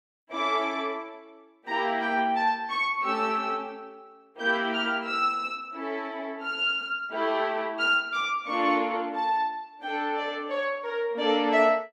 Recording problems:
none

